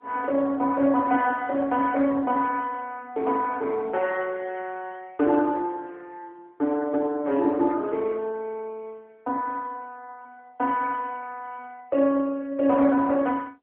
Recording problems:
phone line; 240 Hz to 3 kHz, AMR-NB

